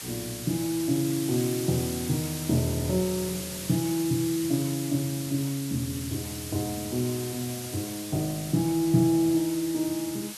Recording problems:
background hiss; slope +1 dB per octave, SNR 8 dB

